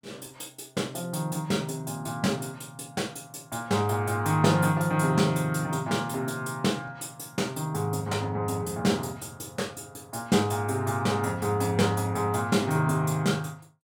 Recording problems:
none

